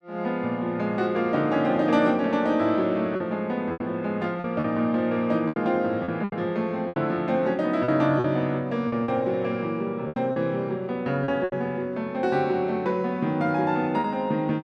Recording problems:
lost packets; 6% of the sound replaced, filled with repeated pitch periods

